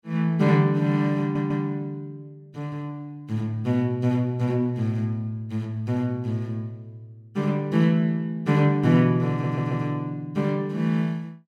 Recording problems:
stutter; at 1 s and at 9.5 s

